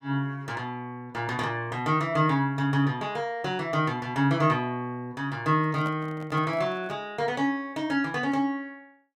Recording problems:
handling noise; from 5.5 to 7 s; peak -8 dB vs average level

